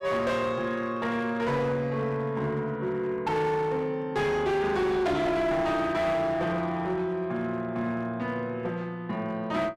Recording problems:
distortion; hard clipping, uneven, signal-to-distortion ratio 10 dB

